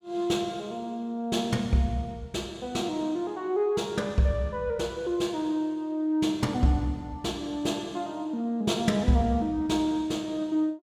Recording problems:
none

